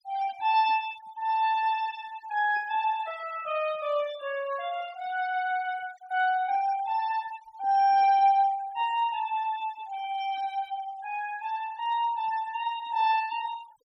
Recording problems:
noise reduction artefacts; signal-to-artefact ratio 20 dB

